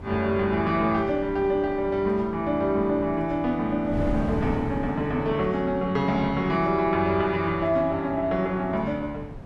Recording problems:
wind noise; below 260 Hz, SNR 13 dB

